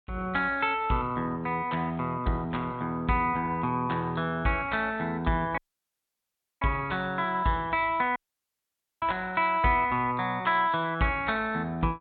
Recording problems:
treble missing; nothing above 4 kHz
dropout; at 5.5 s for 1 s and at 8 s for 1 s

